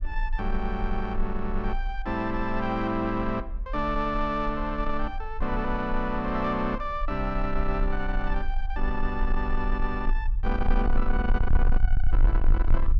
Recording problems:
distorted audio; soft clipping, signal-to-distortion ratio 7 dB
rumble; below 40 Hz, strongest tone 20 Hz, SNR 2 dB

